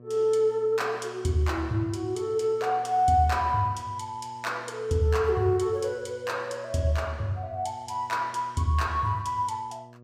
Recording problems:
electrical hum; 60 Hz, harmonics up to 1.2 kHz, SNR 23 dB

